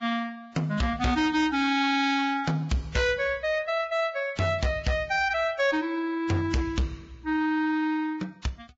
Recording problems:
lossy compression; Vorbis, log-spectral distance 2 dB, nothing above 7.3 kHz
distorted audio; hard clipping, signal-to-distortion ratio 11 dB

